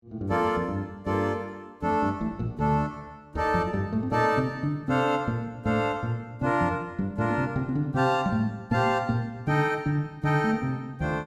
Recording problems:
none

